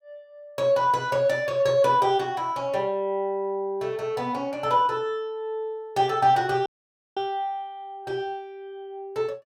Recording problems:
dropout; at 6.5 s for 0.5 s

